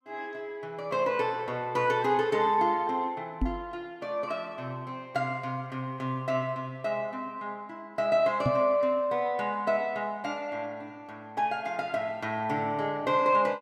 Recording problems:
knock on the microphone; at 3.5 s and at 8.5 s; peak +4 dB vs average level

